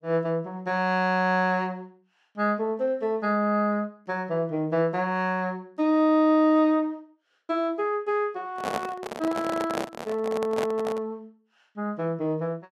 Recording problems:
handling noise; from 8.5 to 11 s; peak 0 dB vs average level

